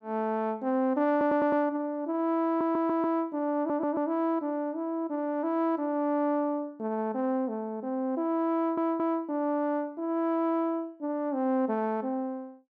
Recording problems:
stutter; 4 times, first at 1 s

